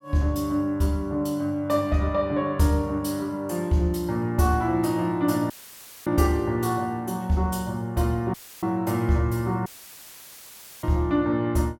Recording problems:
dropout; at 5.5 s for 0.5 s, at 8.5 s and at 9.5 s for 1 s; filled with static

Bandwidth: 17 kHz